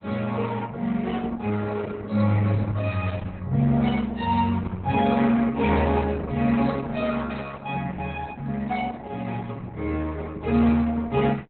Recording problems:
lossy codec; Opus, log-spectral distance 4 dB, nothing above 4 kHz

